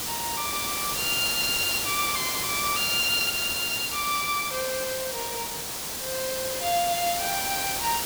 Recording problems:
hiss; slope -1 dB per octave, SNR 0 dB
crackling; from 1.5 to 4 s; loose cable, SNR 17 dB

